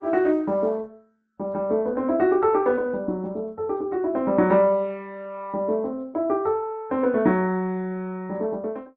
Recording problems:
codec artefacts; Opus, log-spectral distance 2 dB

